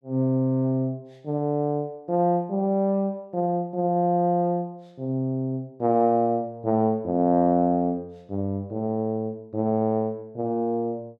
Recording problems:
none

